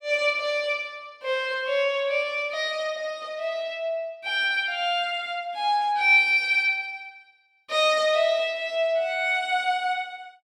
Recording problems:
none

